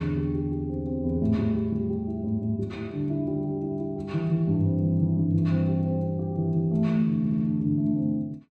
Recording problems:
audio stuttering; at 7 s

